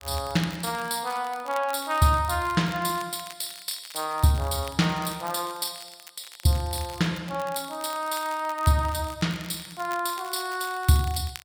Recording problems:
crackling; vinyl, SNR 18 dB

